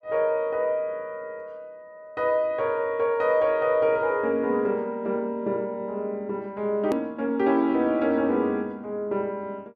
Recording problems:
hard cut with a click; at 7 s

